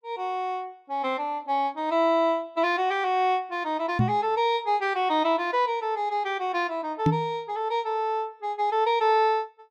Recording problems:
microphone thump; at 4 s and at 7 s; peak +6 dB vs average level

